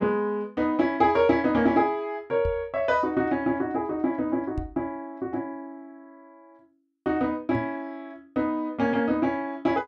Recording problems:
microphone thump; at 2.5 s, at 4.5 s and at 7.5 s; peak -2 dB vs average level

